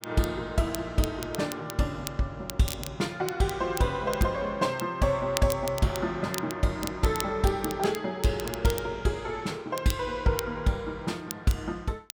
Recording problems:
crackle; vinyl, SNR 11 dB

